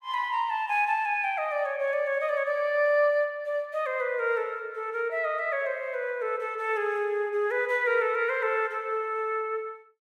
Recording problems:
none

